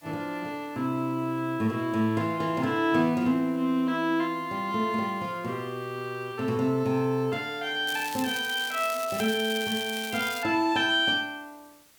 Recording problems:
hiss; slope -1 dB per octave, SNR 28 dB
crackling; from 8 to 10 s; loose cable, SNR 11 dB

